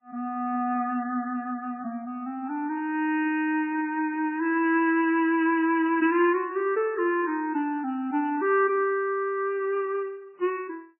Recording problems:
lossy codec; MP3, log-spectral distance 2 dB, nothing above 2.7 kHz

